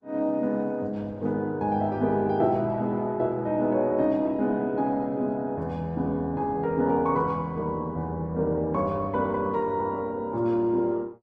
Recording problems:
codec artefacts; Opus, log-spectral distance 2 dB

